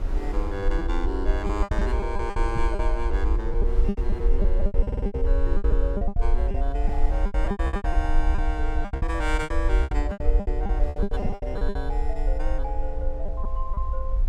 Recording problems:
hum; 60 Hz, harmonics up to 780 Hz, SNR 25 dB
rumble; below 52 Hz, SNR -4 dB
wind on the microphone; below 870 Hz, SNR 17 dB
lost packets; 16% of the sound replaced, filled with repeated pitch periods
stutter; at 5 s

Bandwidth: 16.5 kHz